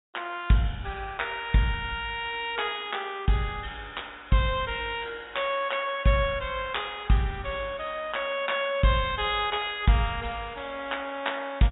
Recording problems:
low-pass filter; nothing above 4 kHz

